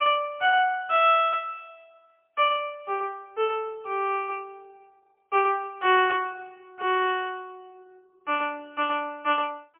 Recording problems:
telephone audio; 320 Hz to 3.5 kHz, AMR-NB, then MP3

